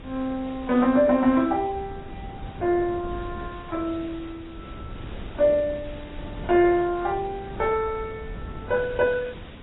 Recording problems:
lossy codec; MP2, then AAC, log-spectral distance 8 dB, nothing above 3.3 kHz
hiss; SNR 23 dB
wind noise; below 230 Hz, SNR 16 dB

